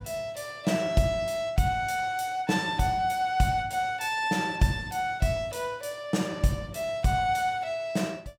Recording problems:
none

